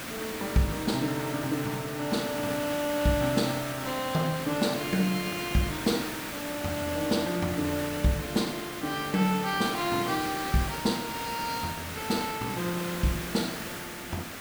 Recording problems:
background hiss; SNR 6 dB

